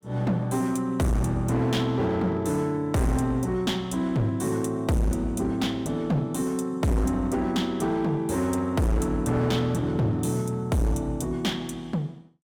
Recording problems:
distorted audio; hard clipping, uneven, signal-to-distortion ratio 7 dB

